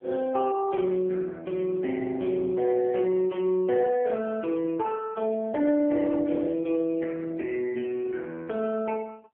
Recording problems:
phone line; 240 Hz to 3.1 kHz, AMR-NB

